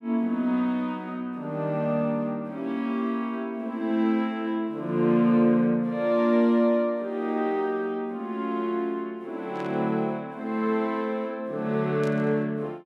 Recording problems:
burst of static; at 9.5 s and at 12 s; peak -15 dB vs average level

